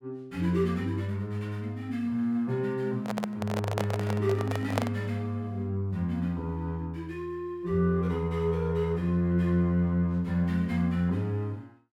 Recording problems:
microphone handling noise; from 3 to 5 s; peak +4 dB vs average level

